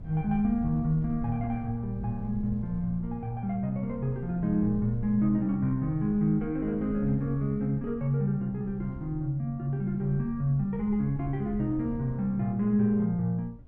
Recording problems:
wind noise; below 96 Hz, SNR 15 dB

